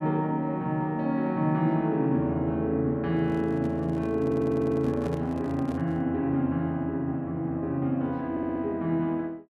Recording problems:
handling noise; from 3 to 6 s; peak -8 dB vs average level
audio stuttering; at 4 s and at 8.5 s

